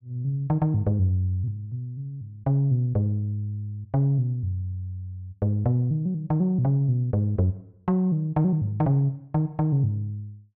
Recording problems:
none

